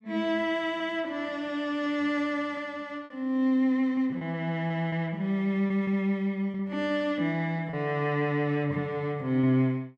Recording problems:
lost packets; 4% of the sound replaced, filled with repeated pitch periods

